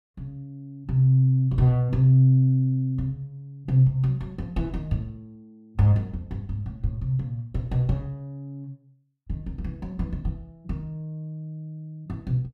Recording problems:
none

